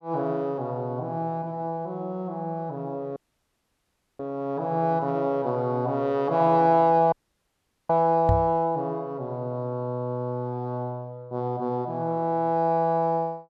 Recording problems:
audio cutting out; at 3 s for 1 s and at 7 s for 1 s
microphone bump; at 8.5 s; peak +5 dB vs average level

